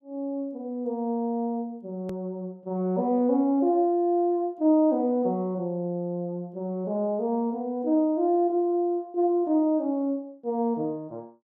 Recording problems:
click at an edit; at 2 s

